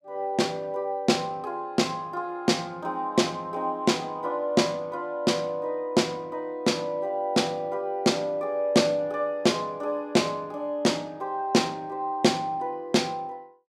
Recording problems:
none

